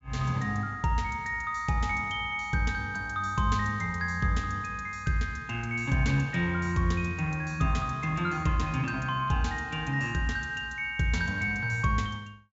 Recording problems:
treble missing; nothing above 8 kHz

